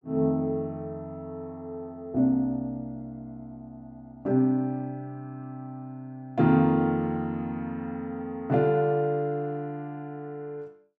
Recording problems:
none

